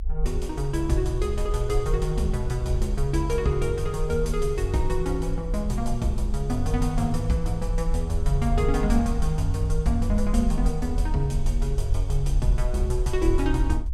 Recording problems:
rumble; below 48 Hz, SNR 3 dB

